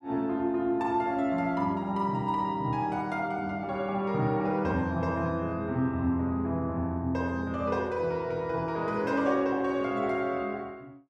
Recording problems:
none

